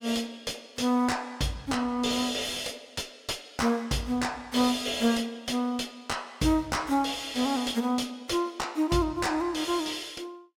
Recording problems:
distorted audio; soft clipping, signal-to-distortion ratio 11 dB

